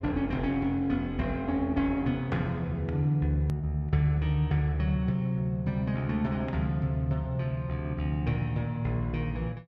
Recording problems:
hard cut with a click; at 3.5 s

